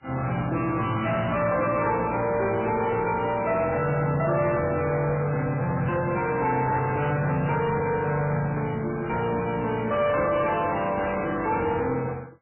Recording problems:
lossy compression; MP3, then MP3, log-spectral distance 4 dB, nothing above 2.7 kHz
distorted audio; soft clipping, signal-to-distortion ratio 11 dB

